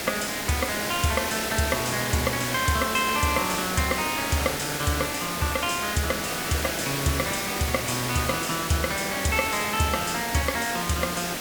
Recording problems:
background hiss; SNR 2 dB

